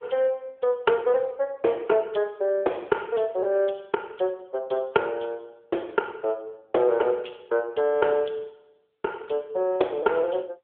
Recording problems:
telephone audio; 300 Hz to 3.6 kHz, AMR-NB

